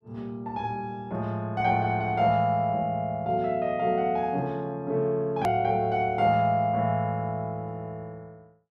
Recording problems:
click at an edit; at 5.5 s

